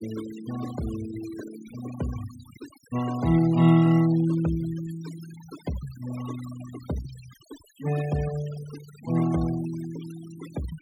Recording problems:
denoising artefacts; signal-to-artefact ratio 17 dB

